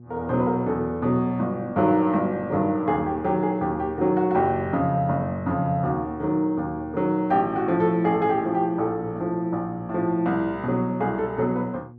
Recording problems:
hum; 60 Hz, harmonics up to 720 Hz, SNR 21 dB

